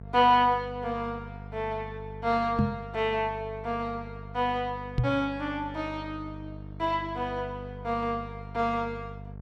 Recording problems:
electrical hum; 50 Hz, harmonics up to 950 Hz, SNR 13 dB
microphone bump; at 2.5 s and at 5 s; peak +8 dB vs average level

